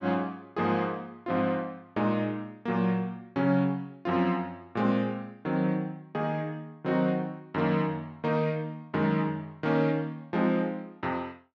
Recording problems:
none

